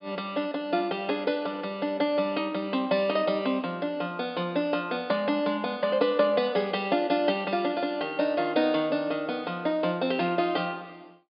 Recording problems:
low-pass filter; nothing above 5.1 kHz

